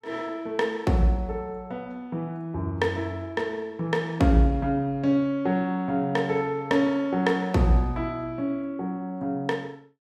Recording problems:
none

